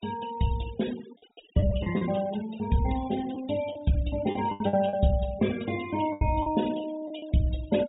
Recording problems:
treble missing; nothing above 4 kHz
noise reduction artefacts; signal-to-artefact ratio 16 dB
packet loss; 7% of the sound replaced, filled with the last packet

